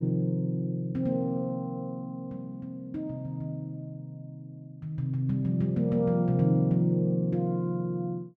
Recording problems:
none

